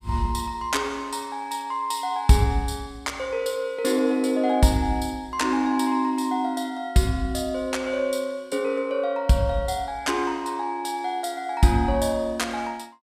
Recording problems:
none

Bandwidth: 15 kHz